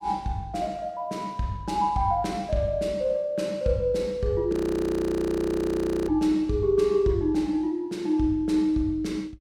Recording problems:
audio freezing; at 4.5 s for 1.5 s

